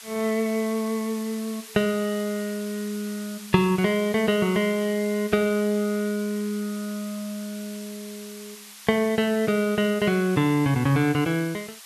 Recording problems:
hiss; SNR 16 dB

